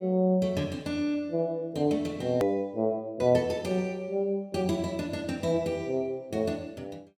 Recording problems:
hard cut with a click; at 2.5 s

